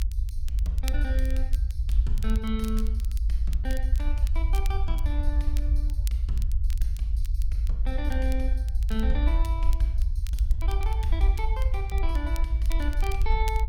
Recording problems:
rumble; below 56 Hz, SNR -9 dB
crackling; vinyl, SNR 12 dB

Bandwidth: 16.5 kHz